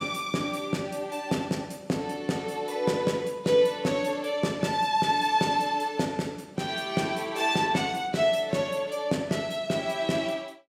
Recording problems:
none

